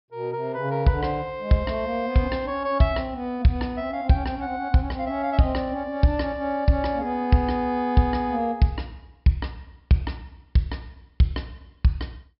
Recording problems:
low-pass filter; nothing above 5.3 kHz

